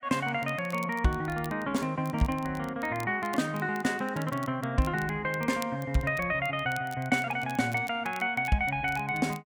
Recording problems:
crackling; vinyl, SNR 21 dB

